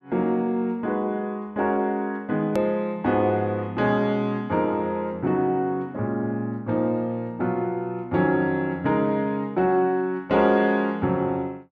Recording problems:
click at an edit; at 2.5 s

